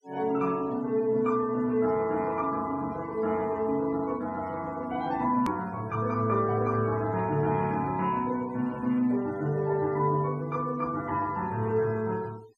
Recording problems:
noise reduction artefacts; signal-to-artefact ratio 23 dB
click at an edit; at 5.5 s

